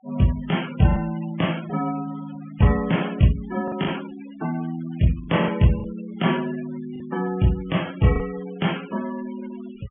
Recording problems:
treble missing; nothing above 3.3 kHz
denoising artefacts; signal-to-artefact ratio 18 dB
packet loss; 3% of the sound replaced, filled with the last packet

